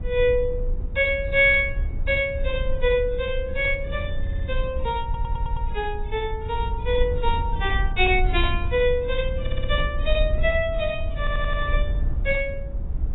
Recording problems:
lossy codec; AAC, log-spectral distance 2 dB, nothing above 3.8 kHz
low-frequency rumble; below 62 Hz, SNR 5 dB
stutter; 4 times, first at 4 s

